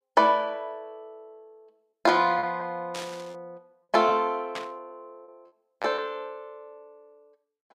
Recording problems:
lost packets; 5% of the sound replaced, filled with repeated pitch periods
static burst; at 3 s and at 4.5 s; peak -6 dB vs average level

